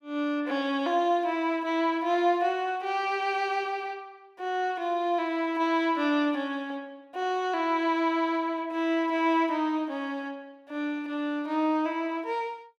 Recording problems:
none

